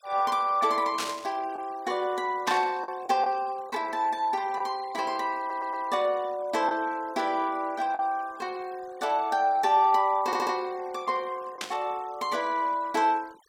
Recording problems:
denoising artefacts; signal-to-artefact ratio 24 dB
packet loss; 1.7% of the sound replaced, filled with the last packet
static burst; at 1 s, at 2.5 s and at 12 s; peak 0 dB vs average level
audio stuttering; at 5.5 s and at 10 s

